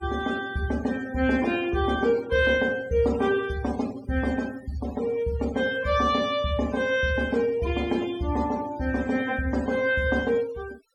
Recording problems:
noise reduction artefacts; signal-to-artefact ratio 18 dB

